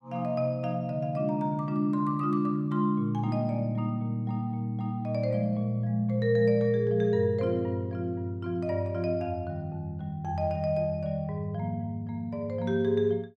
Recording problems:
none

